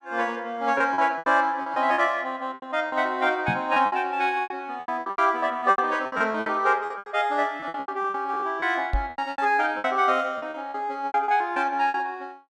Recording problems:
lost packets; 16% of the sound replaced, filled with repeated pitch periods
knock on the microphone; at 3.5 s and at 9 s; peak +1 dB vs average level

